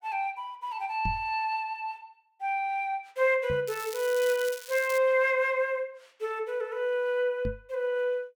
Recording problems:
microphone bump; at 1 s, at 3.5 s and at 7.5 s; peak -2 dB vs average level
crackle; from 3.5 to 5 s; loose cable, SNR 13 dB

